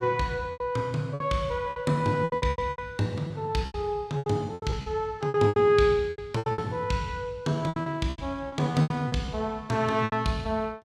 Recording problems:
packet loss; 15% of the sound replaced, filled with repeated pitch periods

